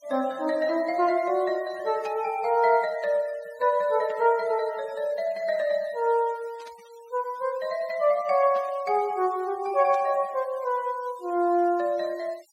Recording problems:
denoising artefacts; signal-to-artefact ratio 25 dB
burst of static; 5 times, first at 2 s; peak -17 dB vs average level

